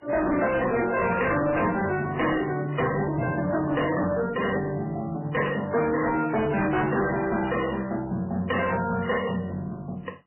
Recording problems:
codec artefacts; MP3, then MP3, log-spectral distance 4 dB, nothing above 2.8 kHz
distorted audio; soft clipping, signal-to-distortion ratio 6 dB

